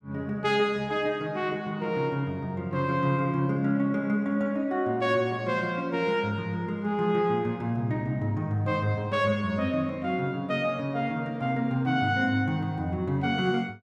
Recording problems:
none

